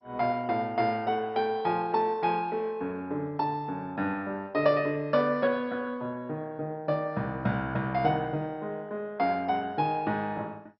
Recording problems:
lossy compression; MP2, log-spectral distance 2 dB, nothing above 4.5 kHz

